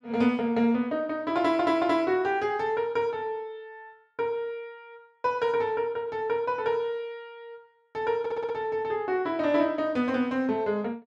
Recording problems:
stutter; at 1.5 s and at 8 s

